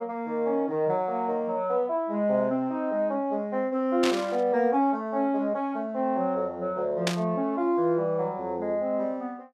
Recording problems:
burst of static; at 4 s and at 7 s; peak +3 dB vs average level

